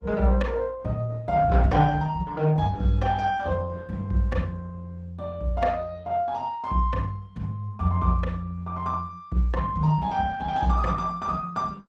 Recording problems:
lossy compression; Opus, log-spectral distance 2 dB

